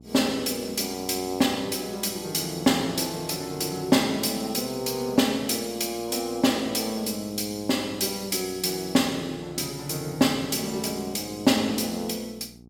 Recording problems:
hum; 60 Hz, harmonics up to 840 Hz, SNR 23 dB

